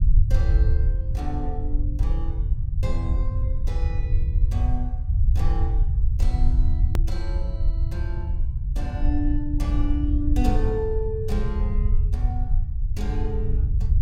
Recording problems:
rumble; below 72 Hz, SNR -8 dB
click at an edit; at 7 s

